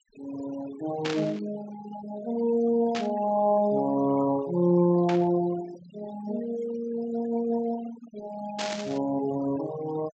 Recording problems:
treble cut off; nothing above 8 kHz
noise reduction artefacts; signal-to-artefact ratio 14 dB
static burst; 4 times, first at 1 s; peak -2 dB vs average level

